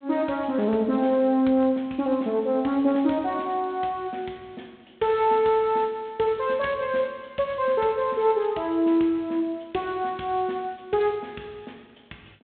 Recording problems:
phone line; 150 Hz to 3.9 kHz, G.726

